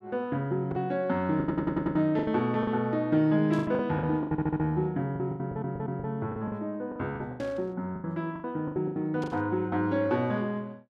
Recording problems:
lost packets; 13% of the sound replaced, filled with the last packet
audio stuttering; at 1.5 s, at 4.5 s and at 5.5 s
burst of static; at 3.5 s, at 7.5 s and at 9 s; peak -14 dB vs average level

